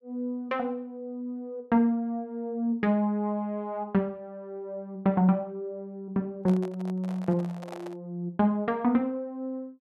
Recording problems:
microphone handling noise; from 6.5 to 8 s; peak -7 dB vs average level

